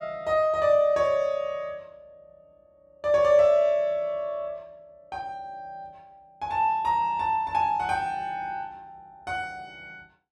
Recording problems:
none

